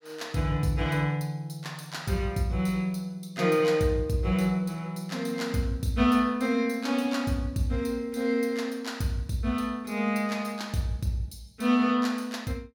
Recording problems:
none

